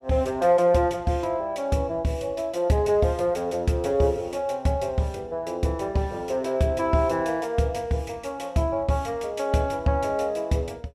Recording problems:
none

